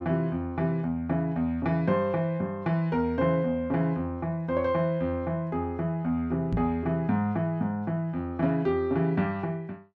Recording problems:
microphone bump; at 6.5 s; peak +2 dB vs average level

